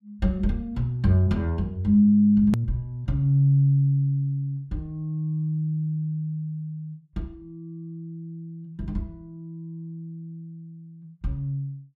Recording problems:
hard cut with a click; at 2.5 s

